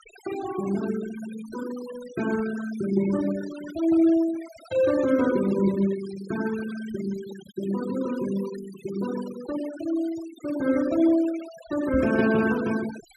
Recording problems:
noise reduction artefacts; signal-to-artefact ratio 15 dB
microphone bump; at 12 s; peak -2 dB vs average level

